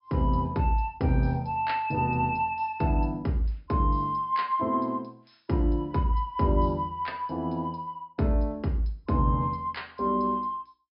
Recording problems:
low-pass filter; nothing above 5.5 kHz

